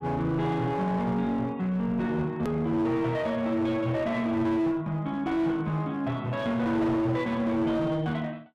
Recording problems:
distorted audio; hard clipping, uneven, signal-to-distortion ratio 9 dB
hard cut with a click; at 2.5 s

